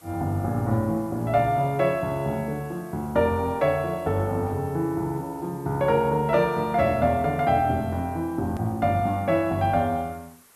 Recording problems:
hiss; SNR 27 dB
click at an edit; at 8.5 s

